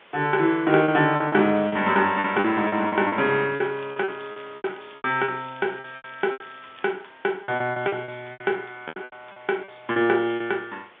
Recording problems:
telephone audio; 110 Hz to 3.5 kHz, G.711
background hiss; SNR 27 dB
packet loss; 14% of the sound replaced, filled with repeated pitch periods
crackling; from 3.5 to 7 s; loose cable, SNR 27 dB

